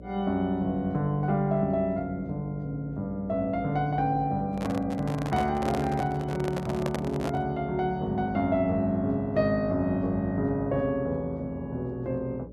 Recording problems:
hum; 60 Hz, harmonics up to 600 Hz, SNR 16 dB
microphone handling noise; from 4.5 to 7.5 s; peak 0 dB vs average level

